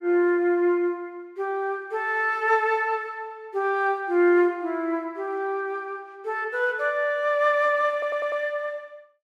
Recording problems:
audio stuttering; at 8 s

